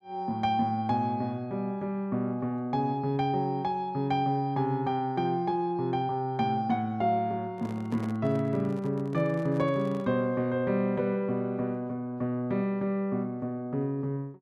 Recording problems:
microphone handling noise; from 7.5 to 10 s; peak -9 dB vs average level

